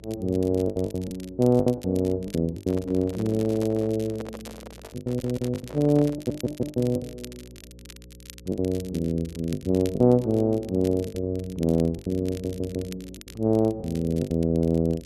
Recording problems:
electrical hum; 60 Hz, harmonics up to 540 Hz, SNR 23 dB
crackling; vinyl, SNR 22 dB
packet loss; 10% of the sound replaced, filled with the last packet
handling noise; from 2.5 to 7 s; peak -8 dB vs average level
audio stuttering; at 5 s, at 6 s and at 12 s

